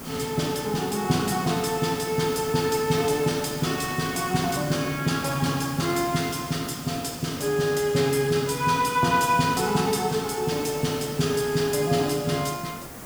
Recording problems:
hiss; SNR 13 dB

